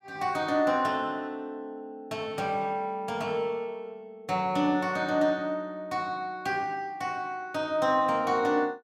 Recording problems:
none

